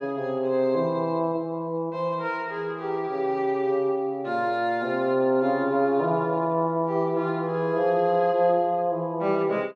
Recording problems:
none

